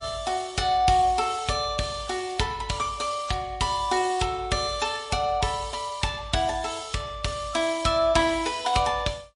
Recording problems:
codec artefacts; MP3, log-spectral distance 4 dB, nothing above 10.4 kHz

